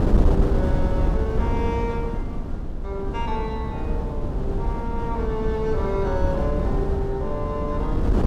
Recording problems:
wind noise; below 160 Hz, SNR -3 dB

